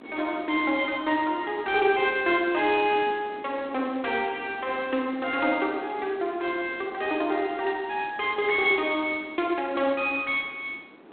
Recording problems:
phone line; 240 Hz to 3.9 kHz, G.726
wind noise; below 830 Hz, SNR 20 dB

